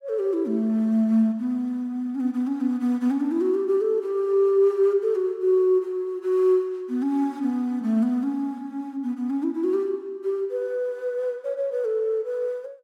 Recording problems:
none

